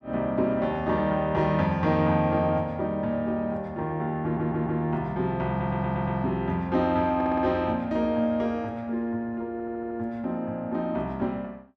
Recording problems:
audio stuttering; 4 times, first at 4 s

